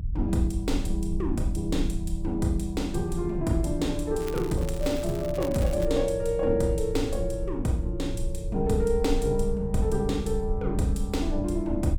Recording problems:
low-frequency rumble; below 64 Hz, strongest tone 26 Hz, SNR 7 dB
crackle; from 4 to 6 s; loose cable, SNR 16 dB

